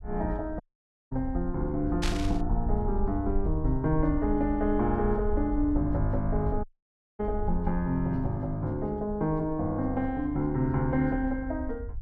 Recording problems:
low-frequency rumble; below 62 Hz, SNR 7 dB
audio cutting out; at 0.5 s for 0.5 s and at 6.5 s for 0.5 s
static burst; at 2 s; peak 0 dB vs average level

